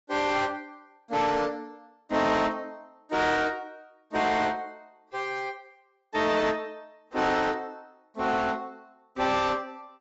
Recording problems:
codec artefacts; AAC, log-spectral distance 2 dB, nothing above 7.6 kHz
distortion; soft clipping, signal-to-distortion ratio 10 dB

